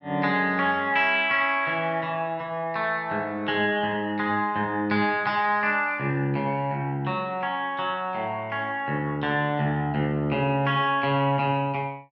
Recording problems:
none

